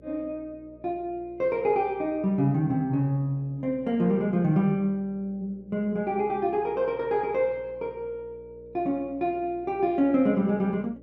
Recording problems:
hum; 60 Hz, harmonics up to 600 Hz, SNR 25 dB

